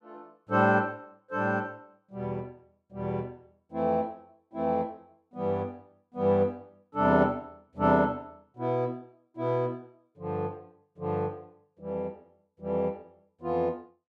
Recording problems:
none

